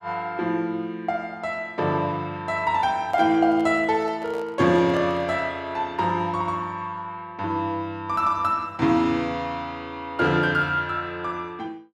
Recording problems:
microphone handling noise; from 3 to 5.5 s; peak -9 dB vs average level

